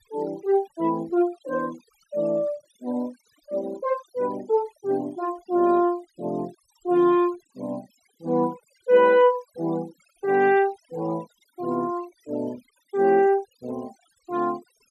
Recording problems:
noise reduction artefacts; signal-to-artefact ratio 25 dB

